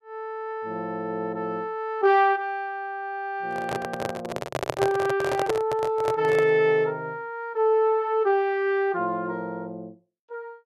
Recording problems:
microphone handling noise; from 3.5 to 6.5 s; peak +3 dB vs average level

